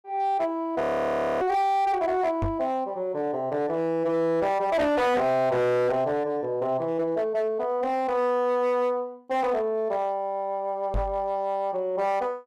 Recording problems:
distorted audio; hard clipping, signal-to-distortion ratio 12 dB
audio freezing; at 1 s for 0.5 s
microphone bump; at 2.5 s and at 11 s; peak 0 dB vs average level

